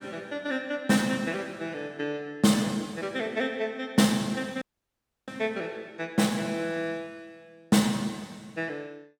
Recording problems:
audio cutting out; at 4.5 s for 0.5 s

